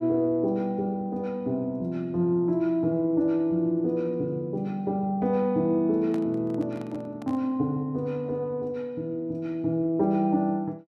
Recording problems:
microphone handling noise; from 6 to 7.5 s; peak -10 dB vs average level

